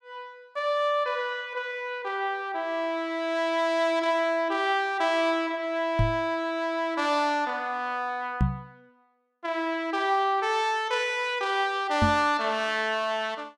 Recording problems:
microphone thump; at 6 s, at 8.5 s and at 12 s; peak +6 dB vs average level

